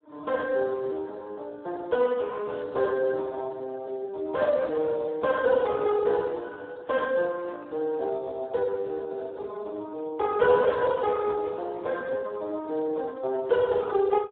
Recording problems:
telephone audio; 300 Hz to 2.1 kHz, Speex

